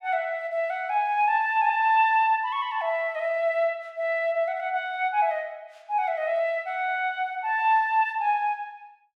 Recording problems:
none

